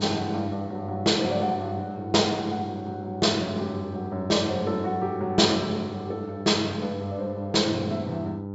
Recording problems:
low-pass filter; nothing above 8 kHz
hum; 50 Hz, harmonics up to 1 kHz, SNR 10 dB

